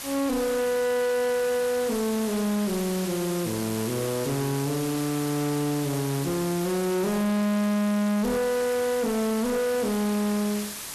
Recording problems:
distortion; soft clipping, signal-to-distortion ratio 7 dB
hiss; SNR 6 dB

